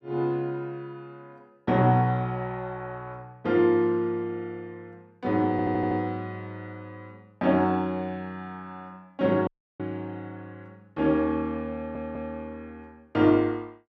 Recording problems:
audio stuttering; at 5.5 s and at 12 s
audio cutting out; at 9.5 s

